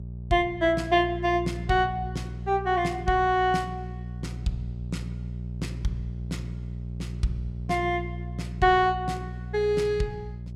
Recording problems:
mains hum; 60 Hz, harmonics up to 420 Hz, SNR 10 dB

